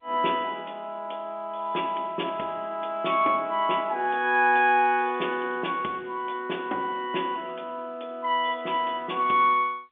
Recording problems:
phone line; 220 Hz to 3.5 kHz, G.711

